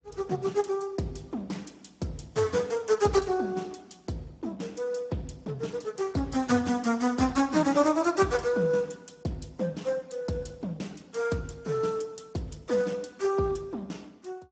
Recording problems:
codec artefacts; Speex, log-spectral distance 5 dB, nothing above 7.8 kHz

